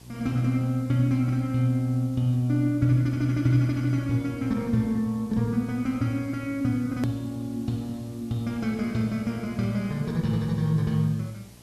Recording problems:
hum; 60 Hz, harmonics up to 480 Hz, SNR 26 dB
background hiss; SNR 27 dB
edit click; at 7 s

